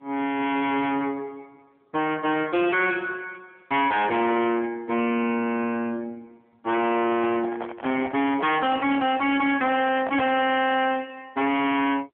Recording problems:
telephone audio; 170 Hz to 3.4 kHz, AMR-NB
distortion; hard clipping, signal-to-distortion ratio 6 dB
handling noise; from 7 to 11 s; peak -4 dB vs average level

